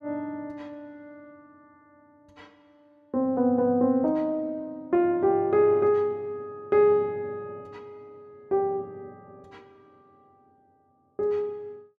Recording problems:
none

